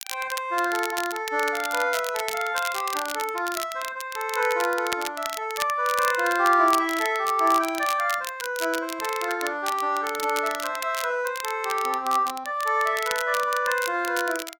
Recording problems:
crackle; vinyl, SNR 10 dB

